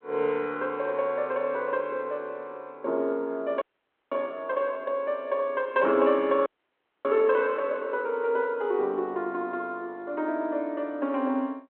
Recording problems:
phone line; 260 Hz to 3.4 kHz, G.726
audio freezing; at 3.5 s for 0.5 s and at 6.5 s for 0.5 s

